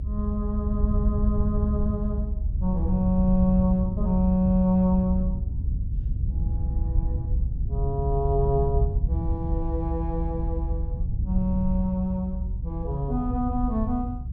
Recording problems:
rumble; below 88 Hz, SNR 1 dB

